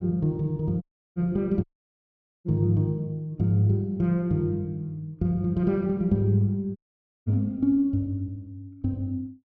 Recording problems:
audio cutting out; at 1 s, at 1.5 s for 1 s and at 7 s for 0.5 s

